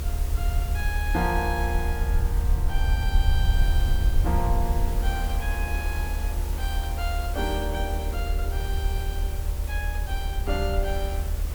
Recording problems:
electrical hum; 50 Hz, harmonics up to 600 Hz, SNR 11 dB
hiss; slope -2 dB per octave, SNR 9 dB
low-frequency rumble; below 74 Hz, SNR -5 dB
wind on the microphone; below 360 Hz, SNR 12 dB

